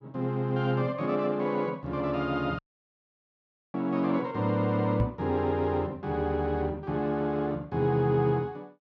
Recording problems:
audio cutting out; at 2.5 s for 1 s
microphone bump; at 5 s; peak +3 dB vs average level

